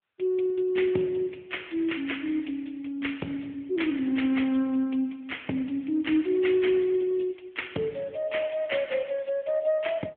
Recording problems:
phone line; 170 Hz to 3.3 kHz, AMR-NB

